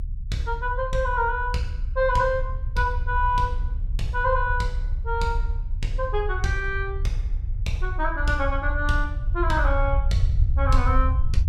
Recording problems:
low-frequency rumble; below 68 Hz, strongest tone 32 Hz, SNR 2 dB

